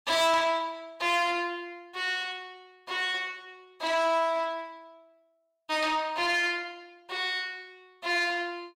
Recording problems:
distorted audio; soft clipping, signal-to-distortion ratio 11 dB

